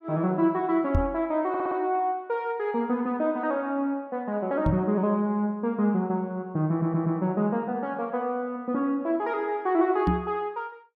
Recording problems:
microphone thump; at 1 s, at 4.5 s and at 10 s; peak +6 dB vs average level
audio stuttering; at 1.5 s and at 6.5 s

